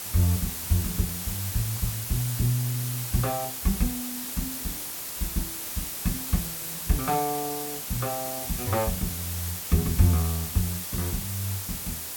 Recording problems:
background hiss; slope 0 dB per octave, SNR 2 dB

